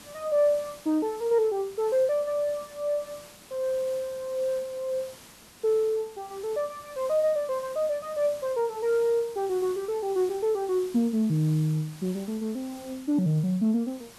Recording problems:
hiss; slope -2 dB per octave, SNR 20 dB

